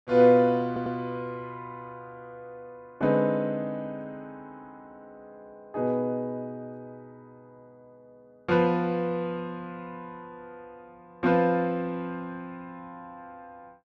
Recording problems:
audio stuttering; at 0.5 s

